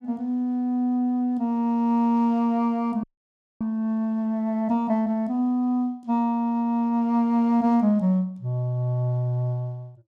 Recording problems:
frozen audio; at 3 s for 0.5 s

